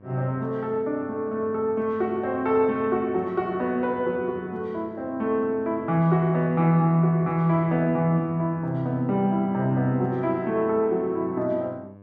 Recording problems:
hum; 50 Hz, harmonics up to 1.2 kHz, SNR 24 dB

